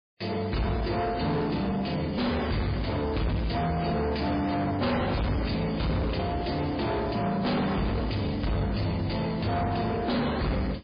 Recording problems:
lossy codec; MP3, log-spectral distance 5 dB, nothing above 4.6 kHz
distorted audio; soft clipping, signal-to-distortion ratio 7 dB

